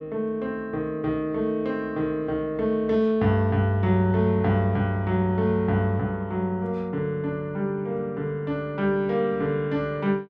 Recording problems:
none

